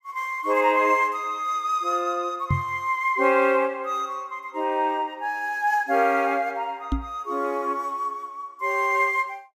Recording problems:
microphone bump; at 2.5 s and at 7 s; peak +3 dB vs average level

